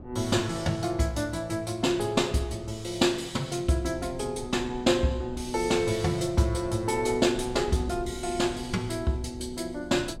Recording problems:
wind noise; below 220 Hz, SNR 17 dB

